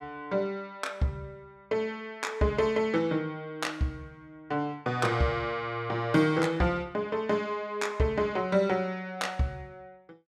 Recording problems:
none

